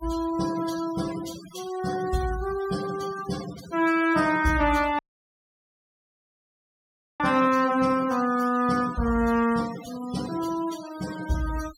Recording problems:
denoising artefacts; signal-to-artefact ratio 16 dB
audio cutting out; at 5 s for 2 s

